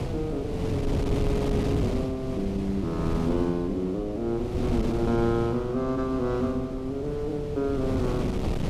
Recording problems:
wind noise; below 300 Hz, SNR 3 dB

